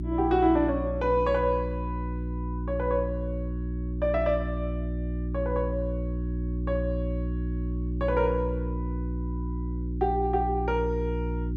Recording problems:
hum; 60 Hz, harmonics up to 360 Hz, SNR 3 dB

